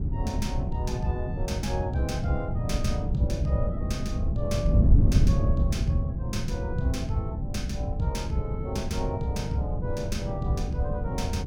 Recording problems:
wind on the microphone; below 130 Hz, SNR -4 dB

